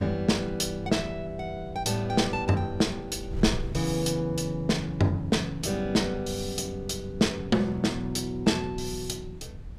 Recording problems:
wind noise; below 110 Hz, SNR 14 dB

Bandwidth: 15.5 kHz